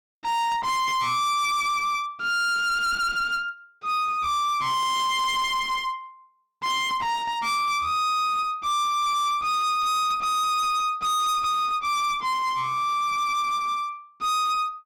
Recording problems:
distorted audio; hard clipping, uneven, signal-to-distortion ratio 5 dB

